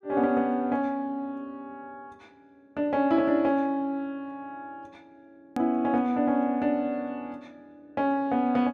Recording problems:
hard cut with a click; at 5.5 s

